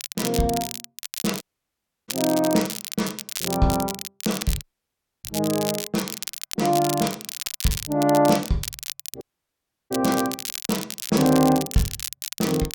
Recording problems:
crackling; vinyl, SNR 7 dB
audio cutting out; at 1.5 s for 0.5 s, at 4.5 s for 0.5 s and at 9 s for 0.5 s

